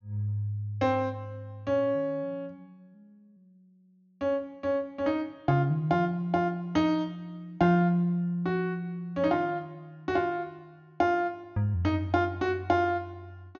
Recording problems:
low-pass filter; nothing above 6.8 kHz

